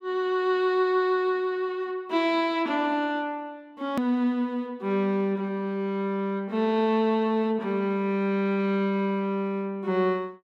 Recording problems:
click at an edit; at 4 s

